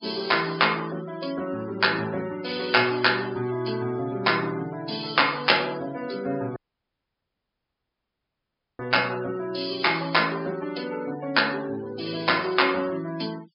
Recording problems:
treble cut off; nothing above 5.5 kHz
denoising artefacts; signal-to-artefact ratio 20 dB
audio cutting out; at 6.5 s for 2 s

